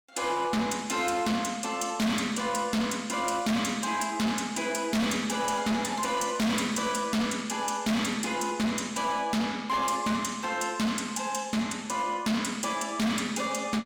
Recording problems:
distorted audio; hard clipping, signal-to-distortion ratio 6 dB

